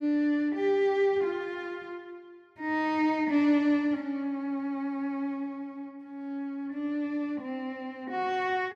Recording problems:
none

